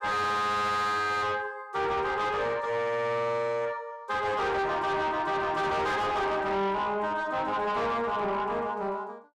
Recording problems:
distortion; soft clipping, signal-to-distortion ratio 6 dB

